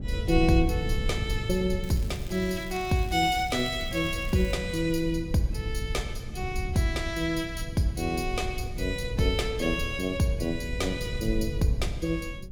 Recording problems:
low-frequency rumble; below 110 Hz, SNR 7 dB
crackle; from 2 to 4.5 s; loose cable, SNR 19 dB

